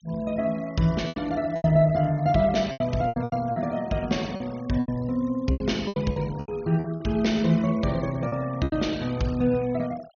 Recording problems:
treble missing; nothing above 6.7 kHz
noise reduction artefacts; signal-to-artefact ratio 22 dB
packet loss; 10% of the sound replaced, filled with repeated pitch periods

